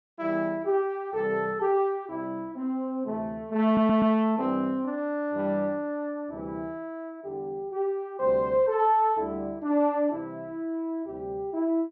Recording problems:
audio stuttering; at 3.5 s

